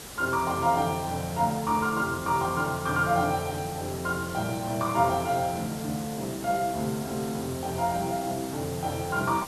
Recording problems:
background hiss; slope -3 dB per octave, SNR 12 dB

